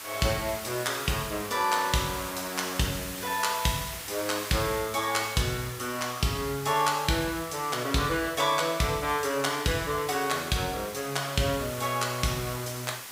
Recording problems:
hiss; slope 0 dB per octave, SNR 10 dB

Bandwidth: 15.5 kHz